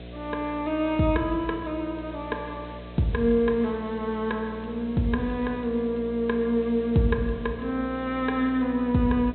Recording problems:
treble cut off; nothing above 4 kHz
electrical hum; 60 Hz, harmonics up to 720 Hz, SNR 15 dB
background hiss; SNR 25 dB

